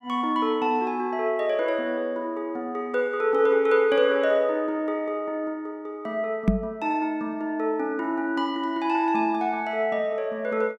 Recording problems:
knock on the microphone; at 6.5 s; peak +9 dB vs average level

